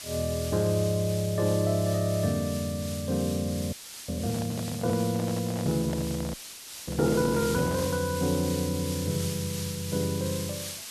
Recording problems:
background hiss; slope +2 dB per octave, SNR 9 dB
audio freezing; at 3.5 s and at 6.5 s for 0.5 s
microphone handling noise; from 4 to 8 s; peak -5 dB vs average level

